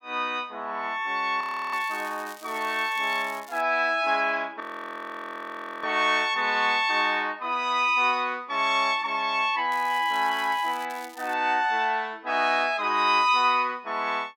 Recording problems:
audio freezing; at 1.5 s and at 4.5 s for 1 s
crackle; from 1.5 to 3.5 s, from 9.5 to 11 s and at 11 s; loose cable, SNR 22 dB

